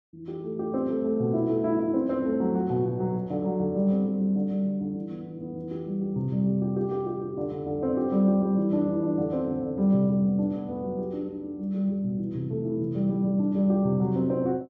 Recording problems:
none

